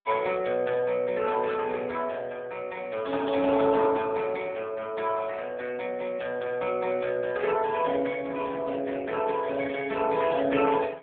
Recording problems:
phone line; 190 Hz to 3.5 kHz, AMR-NB

